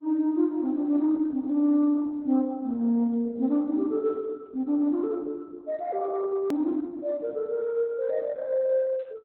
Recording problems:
lossy codec; Opus, log-spectral distance 2 dB, nothing above 17.7 kHz
edit click; at 6.5 s

